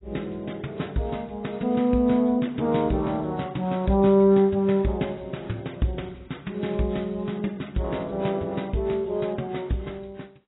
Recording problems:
lossy codec; AAC, log-spectral distance 3 dB, nothing above 3.9 kHz

